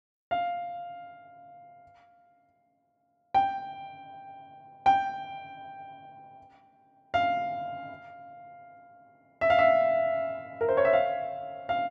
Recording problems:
none

